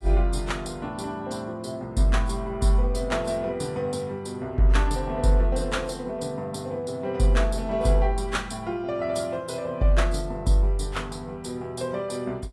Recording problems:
lossy compression; AAC, log-spectral distance 2 dB

